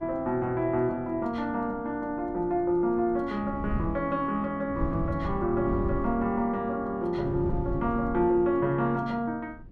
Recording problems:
wind noise; below 150 Hz, SNR 9 dB

